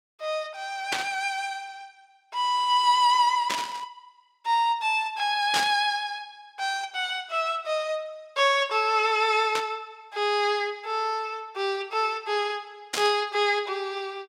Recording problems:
burst of static; 5 times, first at 1 s; peak +2 dB vs average level

